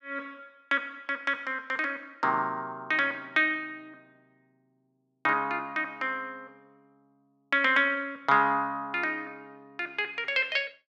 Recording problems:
none

